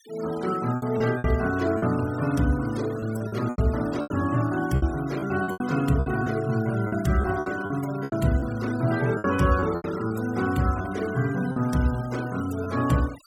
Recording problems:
denoising artefacts; signal-to-artefact ratio 18 dB
lost packets; 9% of the sound replaced, filled with repeated pitch periods

